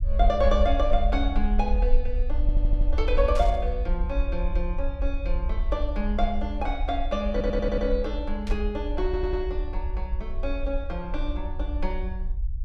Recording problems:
rumble; below 50 Hz, SNR 0 dB
audio stuttering; at 2.5 s, at 7.5 s and at 9 s
burst of static; at 3.5 s and at 8.5 s; peak -7 dB vs average level

